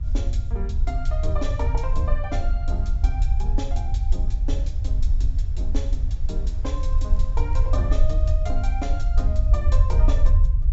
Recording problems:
treble missing; nothing above 8 kHz
rumble; below 62 Hz, SNR -10 dB
wind noise; below 510 Hz, SNR 19 dB
crackling; from 6.5 to 8.5 s; loose cable, SNR 29 dB

